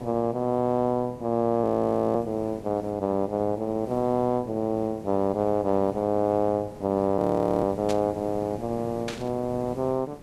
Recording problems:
hiss; SNR 17 dB
audio freezing; at 1.5 s for 0.5 s and at 7 s
burst of static; at 8 s and at 9 s; peak -4 dB vs average level

